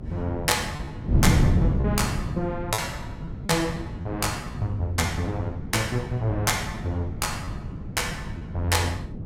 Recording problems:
mains hum; 50 Hz, harmonics up to 500 Hz, SNR 17 dB
wind on the microphone; below 190 Hz, SNR 3 dB
lost packets; 5% of the sound replaced, filled with repeated pitch periods

